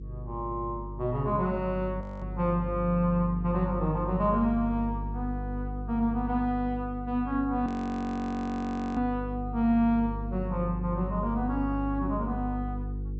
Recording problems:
low-pass filter; nothing above 7.8 kHz
hum; 50 Hz, harmonics up to 450 Hz, SNR 7 dB
frozen audio; at 2 s and at 7.5 s for 1.5 s

